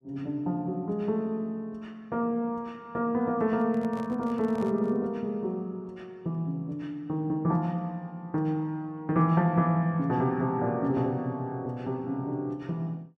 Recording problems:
handling noise; from 3.5 to 5 s; peak -9 dB vs average level

